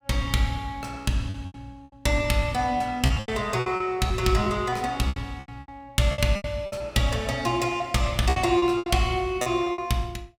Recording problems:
packet loss; 13% of the sound replaced, filled with repeated pitch periods

